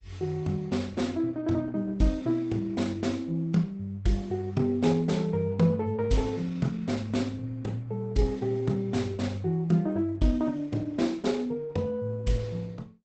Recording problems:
lossy compression; Opus, log-spectral distance 3 dB, nothing above 8.2 kHz

